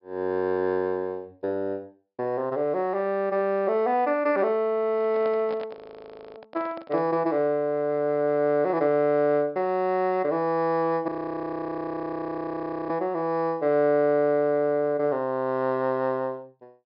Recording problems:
low-pass filter; nothing above 5.5 kHz
microphone handling noise; from 5 to 7 s; peak -10 dB vs average level
frozen audio; at 5.5 s for 0.5 s and at 11 s for 2 s

